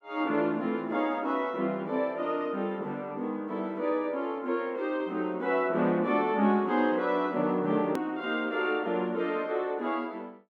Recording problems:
hard cut with a click; at 8 s

